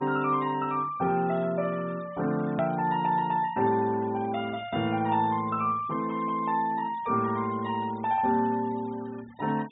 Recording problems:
treble cut off; nothing above 4 kHz
noise reduction artefacts; signal-to-artefact ratio 23 dB
hard cut with a click; at 2.5 s

